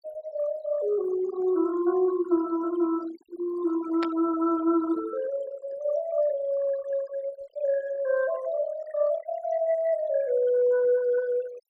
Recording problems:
denoising artefacts; signal-to-artefact ratio 19 dB
static burst; at 4 s; peak -5 dB vs average level

